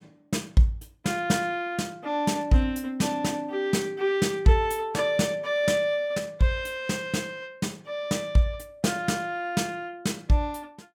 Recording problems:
none

